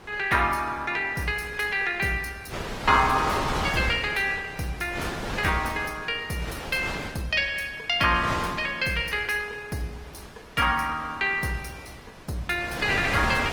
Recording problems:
lossy codec; Opus, log-spectral distance 4 dB, nothing above 19 kHz
wind on the microphone; below 2.1 kHz, SNR 8 dB

